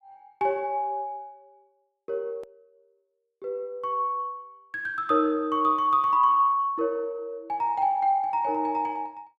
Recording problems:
click at an edit; at 2.5 s

